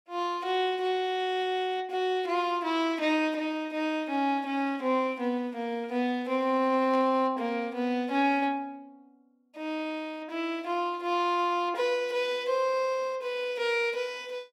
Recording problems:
static burst; at 7 s; peak -13 dB vs average level

